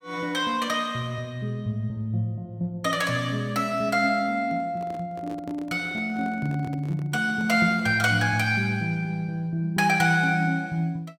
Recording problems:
handling noise; from 4.5 to 8 s; peak -11 dB vs average level

